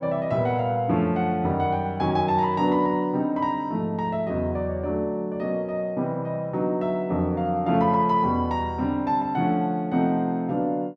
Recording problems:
none

